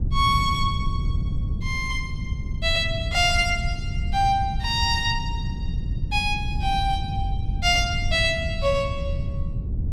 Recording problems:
wind noise; below 120 Hz, SNR 5 dB

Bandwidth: 15 kHz